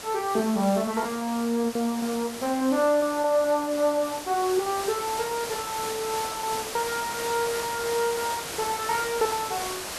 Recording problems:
background hiss; slope -2 dB per octave, SNR 7 dB
lost packets; 12% of the sound replaced, filled with repeated pitch periods

